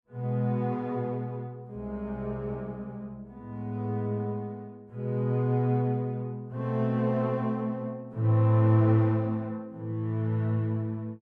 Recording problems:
none

